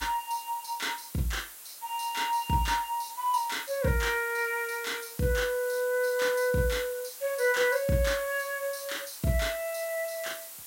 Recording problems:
background hiss; slope +1 dB per octave, SNR 13 dB

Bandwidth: 16 kHz